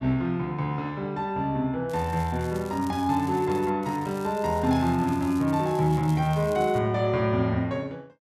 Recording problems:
crackle; from 2 to 3.5 s and from 4 to 7 s; loose cable, SNR 22 dB

